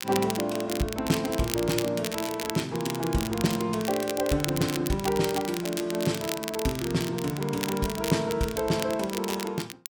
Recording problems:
crackling; vinyl, SNR 7 dB

